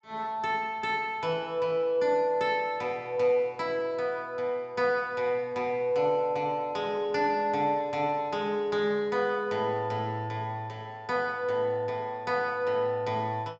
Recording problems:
treble cut off; nothing above 8 kHz

